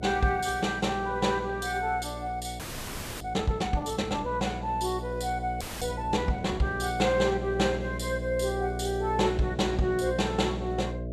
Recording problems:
hum; 60 Hz, harmonics up to 660 Hz, SNR 8 dB
audio freezing; at 2.5 s for 0.5 s and at 5.5 s

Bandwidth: 14 kHz